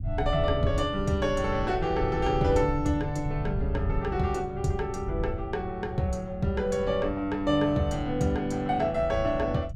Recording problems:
rumble; below 100 Hz, SNR 8 dB

